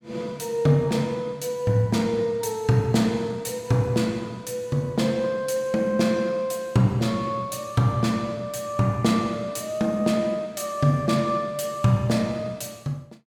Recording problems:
none

